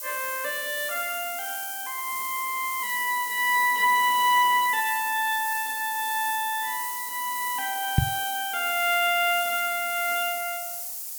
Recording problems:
background hiss; SNR 6 dB
microphone bump; at 8 s; peak +8 dB vs average level

